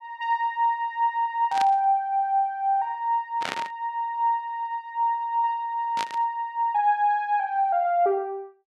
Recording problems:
burst of static; at 1.5 s, at 3.5 s and at 6 s; peak -1 dB vs average level

